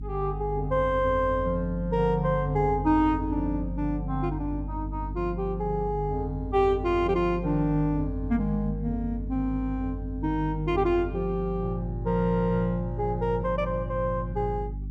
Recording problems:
electrical hum; 50 Hz, harmonics up to 300 Hz, SNR 8 dB

